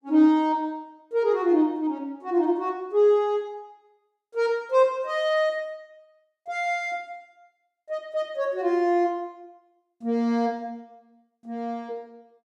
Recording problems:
none

